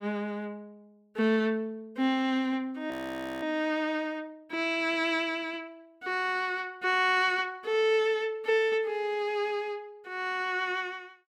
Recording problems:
frozen audio; at 3 s for 0.5 s

